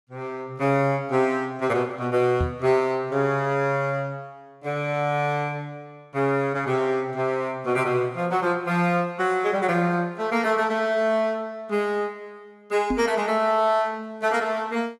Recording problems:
microphone thump; at 2.5 s and at 13 s; peak +1 dB vs average level

